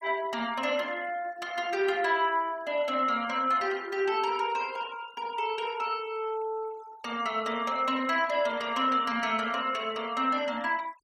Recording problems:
noise reduction artefacts; signal-to-artefact ratio 22 dB

